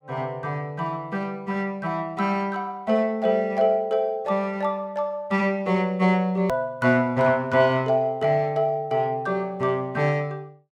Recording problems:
edit click; at 6.5 s

